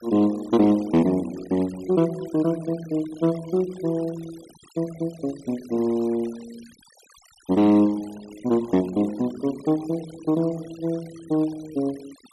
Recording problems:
noise reduction artefacts; signal-to-artefact ratio 22 dB

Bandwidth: 12.5 kHz